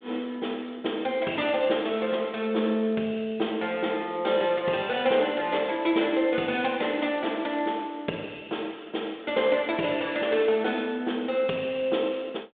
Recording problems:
telephone audio; 240 Hz to 3.6 kHz, G.726

